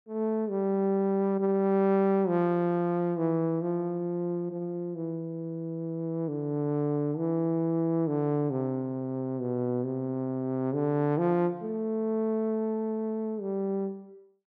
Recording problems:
none

